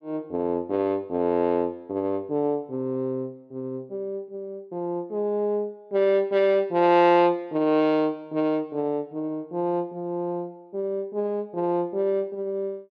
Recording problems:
none

